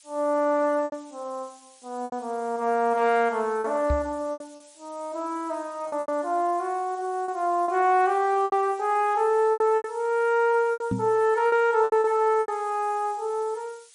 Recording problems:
codec artefacts; MP3, log-spectral distance 6 dB
background hiss; slope +5 dB per octave, SNR 26 dB
packet loss; 8% of the sound replaced, filled with repeated pitch periods
knock on the microphone; at 4 s and at 11 s; peak +1 dB vs average level

